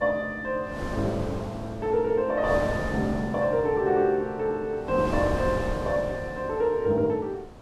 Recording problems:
wind noise; below 610 Hz, SNR 9 dB

